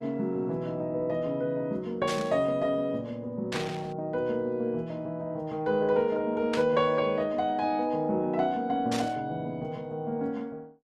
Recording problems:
codec artefacts; Opus, log-spectral distance 2 dB
burst of static; 4 times, first at 2 s; peak -1 dB vs average level

